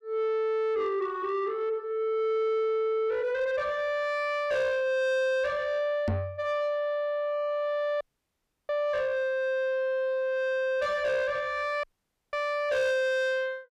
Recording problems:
distorted audio; soft clipping, signal-to-distortion ratio 11 dB
microphone bump; at 6 s; peak +2 dB vs average level
audio cutting out; at 8 s for 0.5 s and at 12 s

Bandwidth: 14.5 kHz